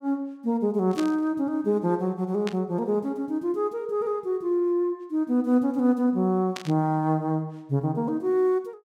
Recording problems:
burst of static; at 1 s, at 2.5 s and at 6.5 s; peak -5 dB vs average level

